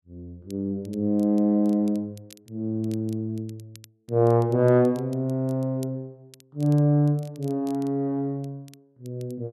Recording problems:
crackling; vinyl, SNR 29 dB

